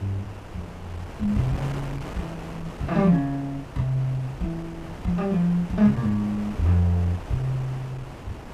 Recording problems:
wind on the microphone; below 860 Hz, SNR 13 dB

